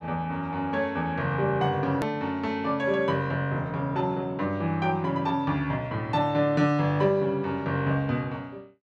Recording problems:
click at an edit; at 2 s

